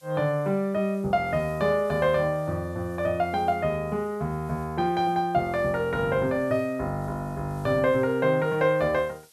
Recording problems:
hiss; SNR 29 dB

